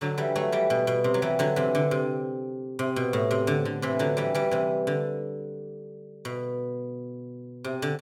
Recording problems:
none

